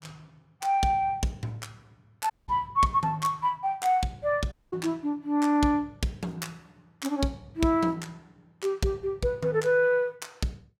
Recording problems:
dropout; at 2.5 s and at 4.5 s

